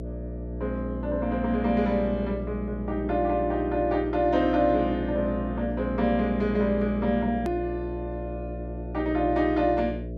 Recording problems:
hum; 60 Hz, harmonics up to 660 Hz, SNR 8 dB
edit click; at 7.5 s

